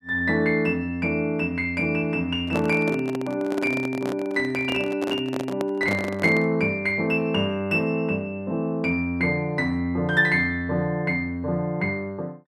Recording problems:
microphone handling noise; from 2.5 to 6.5 s; peak -2 dB vs average level

